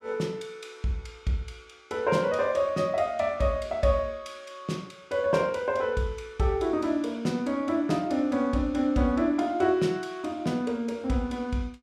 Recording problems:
none

